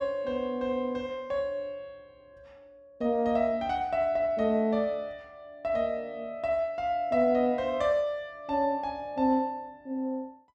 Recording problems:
none

